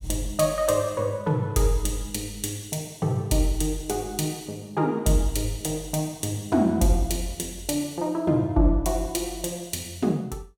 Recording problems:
none

